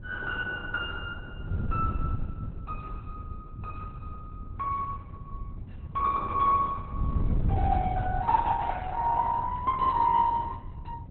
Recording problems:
lossy compression; Opus, log-spectral distance 2 dB, nothing above 4 kHz
wind noise; below 120 Hz, SNR 8 dB

